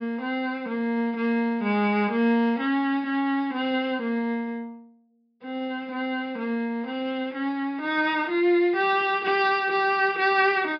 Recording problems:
low-pass filter; nothing above 5.5 kHz

